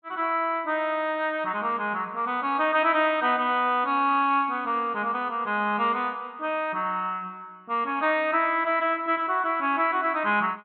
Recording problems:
treble cut off; nothing above 4 kHz

